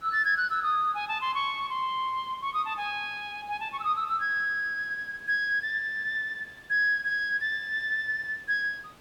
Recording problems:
hiss; slope -4 dB per octave, SNR 26 dB

